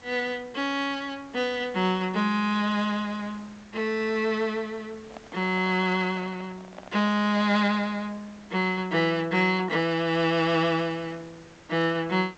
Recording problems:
codec artefacts; G.722, log-spectral distance 3 dB, nothing above 7.3 kHz
background hiss; slope -4 dB per octave, SNR 24 dB
microphone handling noise; from 5 to 8 s; peak -12 dB vs average level

